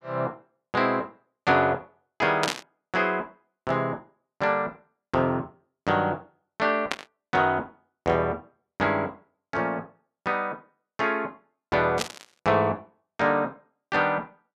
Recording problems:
static burst; at 2.5 s, at 7 s and at 12 s; peak +4 dB vs average level

